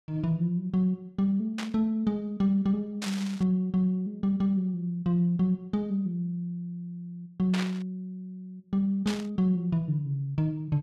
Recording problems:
burst of static; 4 times, first at 1.5 s; peak -3 dB vs average level

